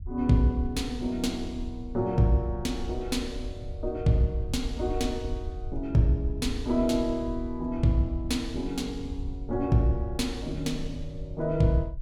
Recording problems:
low-frequency rumble; below 76 Hz, SNR 11 dB

